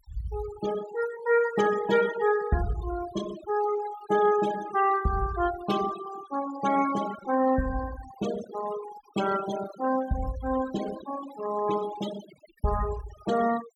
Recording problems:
noise reduction artefacts; signal-to-artefact ratio 12 dB

